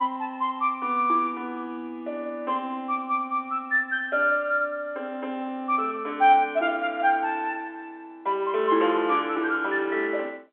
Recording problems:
phone line; 280 Hz to 3.5 kHz, G.711

